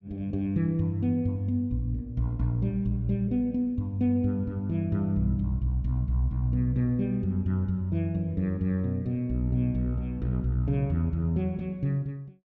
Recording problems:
none

